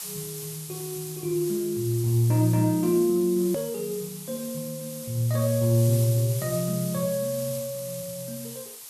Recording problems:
hiss; SNR 11 dB
hard cut with a click; at 3.5 s

